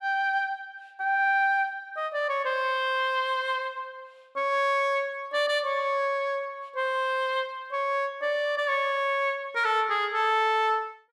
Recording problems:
none

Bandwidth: 14 kHz